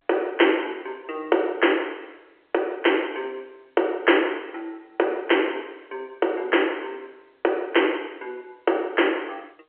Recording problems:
telephone audio; 300 Hz to 3.2 kHz, G.711

